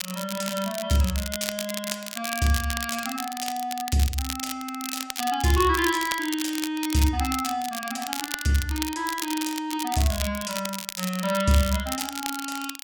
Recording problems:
crackle; vinyl, SNR 6 dB

